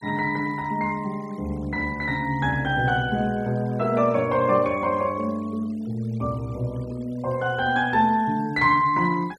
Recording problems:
noise reduction artefacts; signal-to-artefact ratio 26 dB

